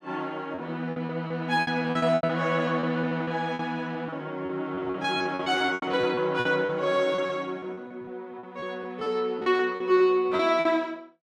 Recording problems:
lost packets; 15% of the sound replaced, filled with repeated pitch periods

